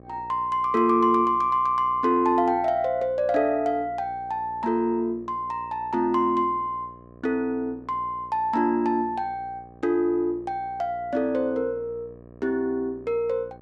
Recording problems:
hum; 60 Hz, harmonics up to 1.3 kHz, SNR 23 dB

